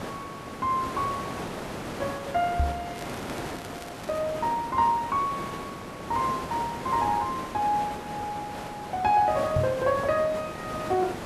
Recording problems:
hiss; slope -6 dB per octave, SNR 8 dB
microphone bump; at 2.5 s and at 9.5 s; peak +4 dB vs average level
crackling; from 3 to 4 s; loose cable, SNR 19 dB

